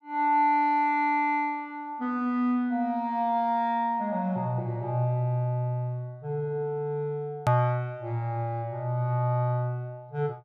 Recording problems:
click at an edit; at 7.5 s

